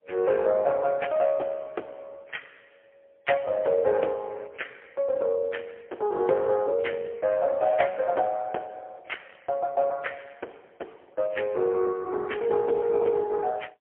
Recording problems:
telephone audio; 280 Hz to 3.3 kHz, AMR-NB, then MP3

